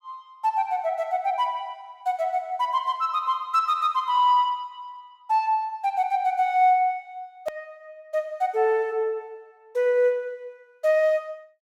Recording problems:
click at an edit; at 7.5 s

